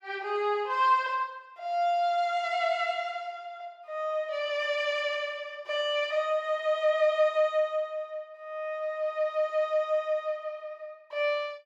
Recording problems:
none

